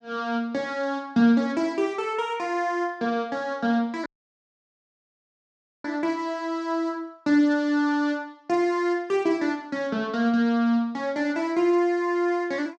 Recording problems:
dropout; at 4 s for 2 s

